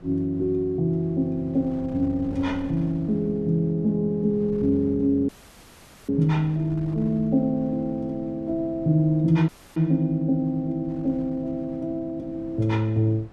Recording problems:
wind noise; below 270 Hz, SNR 23 dB
dropout; at 5.5 s for 1 s and at 9.5 s

